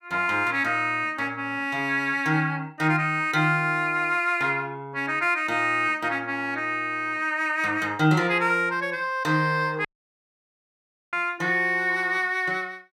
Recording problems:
dropout; at 10 s for 1.5 s

